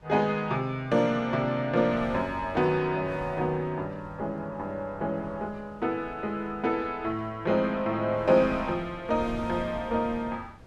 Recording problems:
wind on the microphone; below 400 Hz, SNR 19 dB

